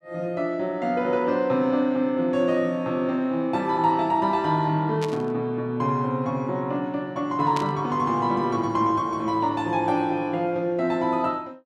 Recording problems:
static burst; at 5 s and at 7.5 s; peak -6 dB vs average level

